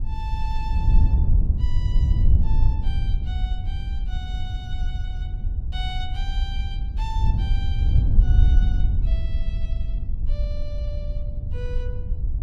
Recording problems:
rumble; below 48 Hz, SNR -6 dB
wind on the microphone; below 76 Hz, SNR -15 dB

